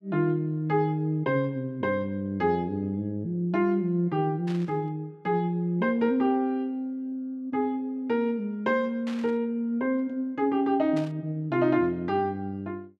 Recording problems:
burst of static; at 4.5 s, at 9 s and at 11 s; peak -10 dB vs average level

